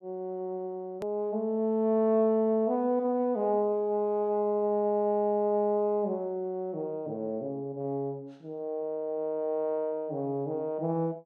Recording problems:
edit click; at 1 s

